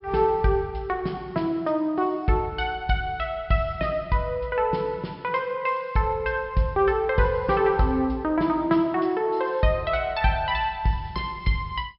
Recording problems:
low-pass filter; nothing above 5.3 kHz

